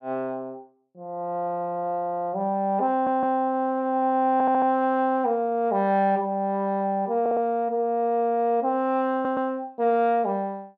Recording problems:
stutter; 4 times, first at 3 s

